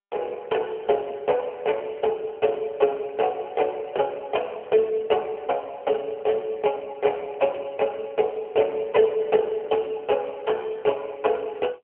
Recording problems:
telephone audio; 300 Hz to 3.2 kHz, AMR-NB

